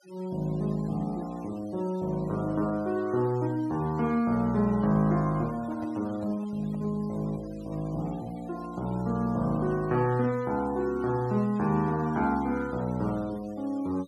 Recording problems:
denoising artefacts; signal-to-artefact ratio 23 dB
handling noise; from 5.5 to 7 s; peak -10 dB vs average level

